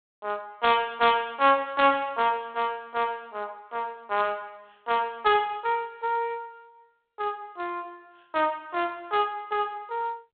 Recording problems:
telephone audio; 300 Hz to 3.7 kHz, G.726

